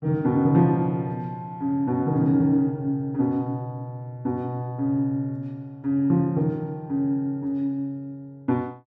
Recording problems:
none

